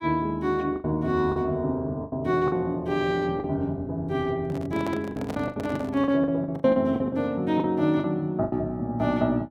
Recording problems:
packet loss; 10% of the sound replaced, filled with the last packet
handling noise; from 4.5 to 6 s; peak -5 dB vs average level

